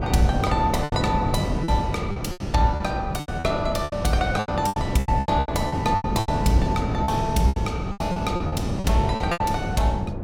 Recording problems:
electrical hum; 50 Hz, harmonics up to 700 Hz, SNR 13 dB
wind noise; below 320 Hz, SNR 3 dB
lost packets; 15% of the sound replaced, filled with repeated pitch periods

